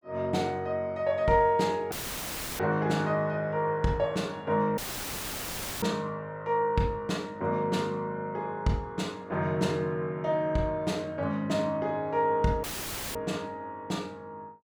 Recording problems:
audio cutting out; at 2 s for 0.5 s, at 5 s for 1 s and at 13 s for 0.5 s; filled with static

